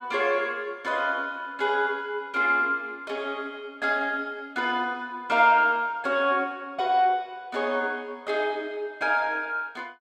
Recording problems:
none

